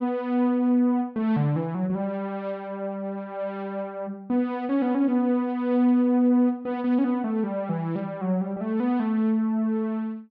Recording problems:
none

